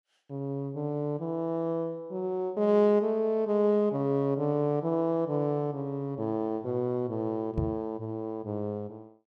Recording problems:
microphone thump; at 7.5 s; peak +3 dB vs average level

